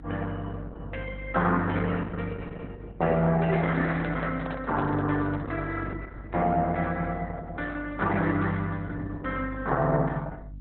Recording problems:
lossy codec; Opus, log-spectral distance 3 dB, nothing above 3.7 kHz
hum; 50 Hz, harmonics up to 300 Hz, SNR 15 dB
microphone handling noise; from 3.5 to 5.5 s; peak -4 dB vs average level

